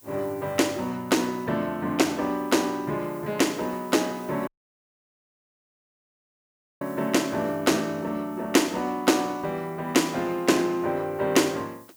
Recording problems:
hiss; SNR 25 dB
dropout; at 4.5 s for 2.5 s

